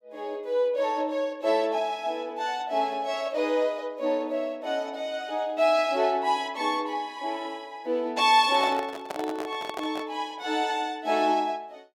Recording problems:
microphone handling noise; from 8.5 to 10 s; peak -3 dB vs average level

